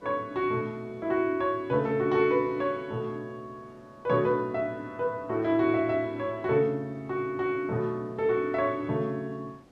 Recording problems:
hiss; slope -7 dB per octave, SNR 28 dB

